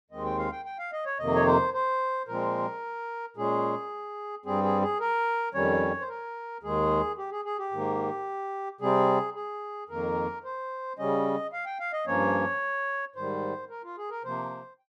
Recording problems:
none

